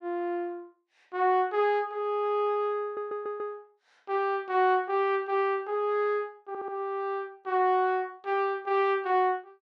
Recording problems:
stutter; at 3 s and at 6.5 s

